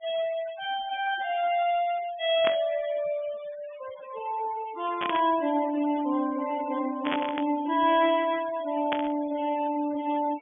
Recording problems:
treble cut off; nothing above 3.3 kHz
noise reduction artefacts; signal-to-artefact ratio 18 dB
burst of static; 4 times, first at 2.5 s; peak +2 dB vs average level

